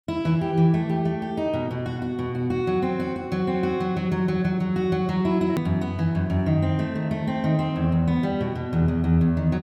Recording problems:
edit click; at 5.5 s

